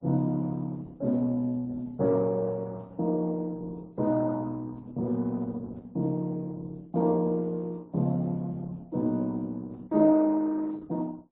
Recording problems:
lossy codec; Opus, then MP3, log-spectral distance 2 dB, nothing above 10.7 kHz

